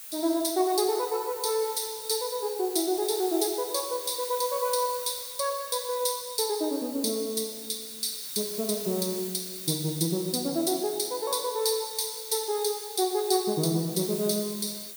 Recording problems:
background hiss; slope +2 dB per octave, SNR 10 dB

